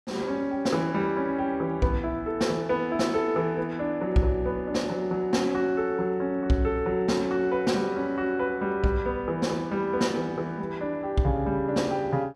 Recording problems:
none

